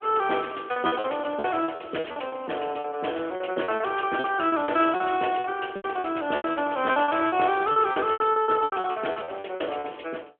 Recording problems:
telephone audio; 280 Hz to 3.3 kHz, AMR-NB
lost packets; 17% of the sound replaced, filled with repeated pitch periods

